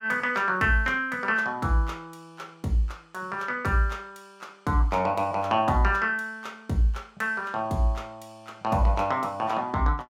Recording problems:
none

